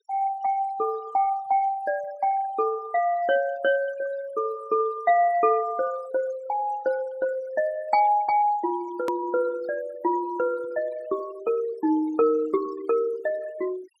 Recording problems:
denoising artefacts; signal-to-artefact ratio 21 dB
edit click; at 9 s

